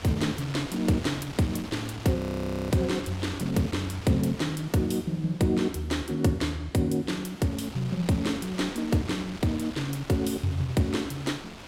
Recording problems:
wind noise; below 3.6 kHz, SNR 14 dB
audio freezing; at 2 s for 0.5 s

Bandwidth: 16 kHz